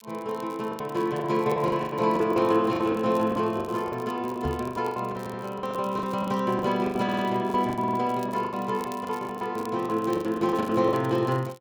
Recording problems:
crackle; vinyl, SNR 25 dB
packet loss; 17% of the sound replaced, filled with the last packet
microphone bump; at 4.5 s; peak -1 dB vs average level
audio stuttering; at 5 s, at 7 s and at 8 s

